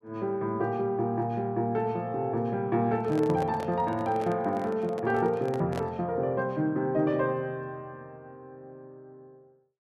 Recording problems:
microphone handling noise; from 3 to 6 s; peak -3 dB vs average level

